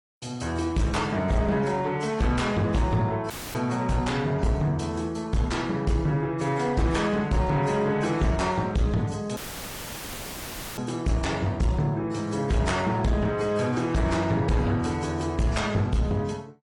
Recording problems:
lossy compression; MP3, then AAC, log-spectral distance 3 dB
distorted audio; soft clipping, signal-to-distortion ratio 11 dB
audio cutting out; at 3.5 s and at 9.5 s for 1.5 s; filled with static

